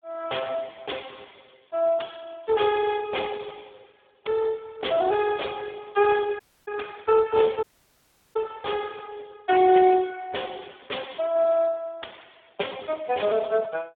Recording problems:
phone line; 320 Hz to 3.5 kHz, Speex
dropout; at 6.5 s and at 7.5 s for 0.5 s

